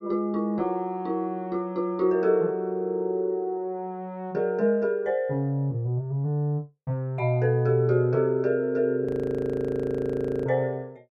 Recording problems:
audio freezing; at 9 s for 1.5 s

